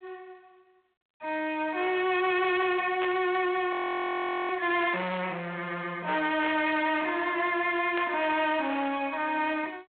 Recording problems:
telephone audio; 300 Hz to 3.4 kHz, G.726
distortion; hard clipping, signal-to-distortion ratio 9 dB
static burst; at 3 s, at 6.5 s and at 8 s; peak -6 dB vs average level
frozen audio; at 3.5 s for 1 s

